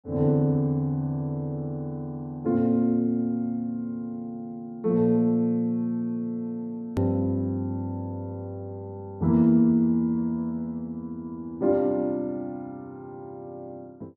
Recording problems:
click at an edit; at 7 s

